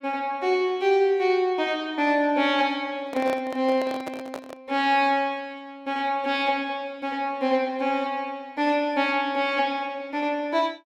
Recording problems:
handling noise; from 3 to 4.5 s; peak -5 dB vs average level

